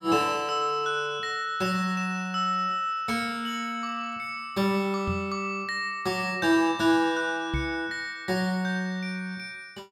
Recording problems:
knock on the microphone; at 5 s and at 7.5 s; peak 0 dB vs average level

